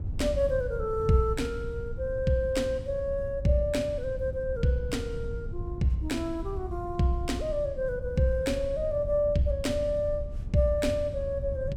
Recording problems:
hum; 60 Hz, harmonics up to 900 Hz, SNR 24 dB
wind on the microphone; below 94 Hz, SNR 9 dB

